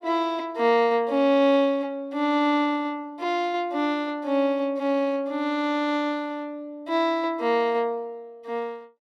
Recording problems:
none

